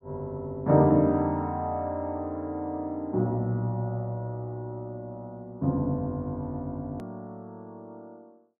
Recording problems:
edit click; at 7 s

